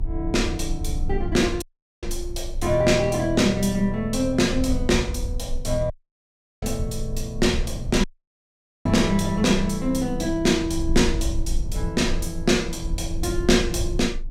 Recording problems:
rumble; below 60 Hz, strongest tone 24 Hz, SNR 9 dB
audio cutting out; at 1.5 s, at 6 s for 0.5 s and at 8 s for 1 s

